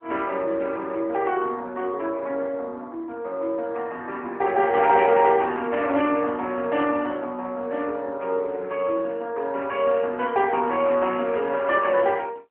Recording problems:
phone line; 260 Hz to 3.2 kHz, AMR-NB

